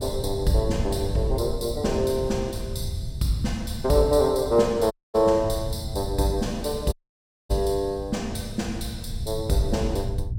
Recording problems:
rumble; below 110 Hz, SNR 9 dB
dropout; at 5 s and at 7 s for 0.5 s

